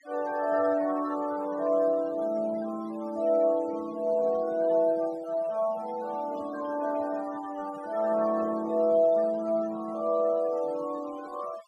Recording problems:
noise reduction artefacts; signal-to-artefact ratio 20 dB

